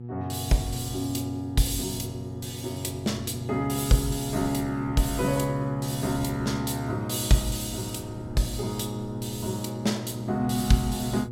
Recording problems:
electrical hum; 60 Hz, harmonics up to 480 Hz, SNR 9 dB
wind on the microphone; below 210 Hz, SNR 19 dB

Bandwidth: 16 kHz